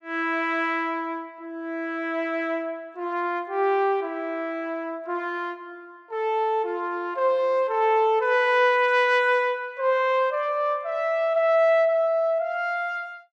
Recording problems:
none

